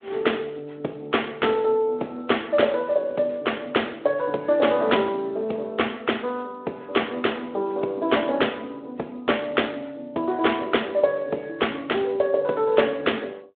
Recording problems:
telephone audio; 260 Hz to 3.6 kHz, Speex

